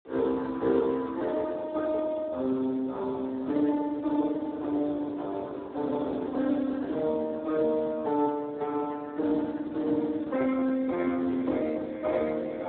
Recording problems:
phone line; 220 Hz to 2.1 kHz, Speex
wind on the microphone; below 590 Hz, SNR 14 dB

